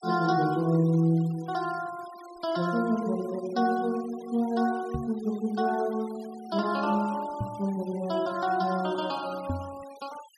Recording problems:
denoising artefacts; signal-to-artefact ratio 20 dB
microphone thump; at 5 s, at 7.5 s and at 9.5 s; peak 0 dB vs average level

